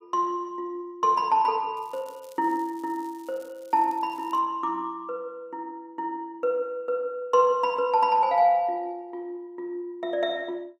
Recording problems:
crackle; from 2 to 4.5 s; loose cable, SNR 29 dB

